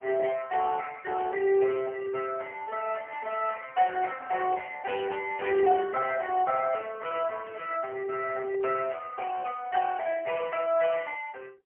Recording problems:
telephone audio; 300 Hz to 3 kHz, AMR-NB, then MP3

